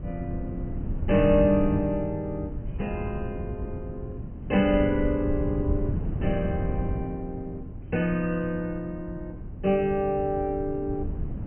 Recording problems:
low-pass filter; nothing above 3.1 kHz
wind noise; below 150 Hz, SNR 6 dB

